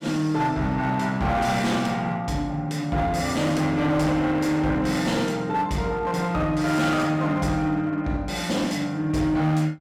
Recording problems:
distorted audio; hard clipping, uneven, signal-to-distortion ratio 10 dB

